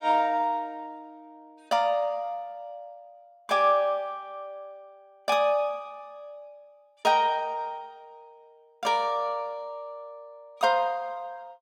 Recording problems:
none

